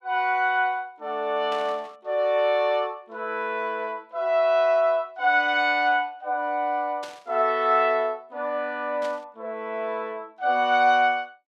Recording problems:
burst of static; at 1.5 s, at 7 s and at 9 s; peak -12 dB vs average level

